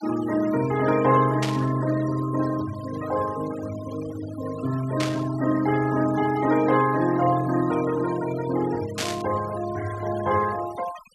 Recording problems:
denoising artefacts; signal-to-artefact ratio 14 dB
burst of static; at 1.5 s, at 5 s and at 9 s; peak 0 dB vs average level

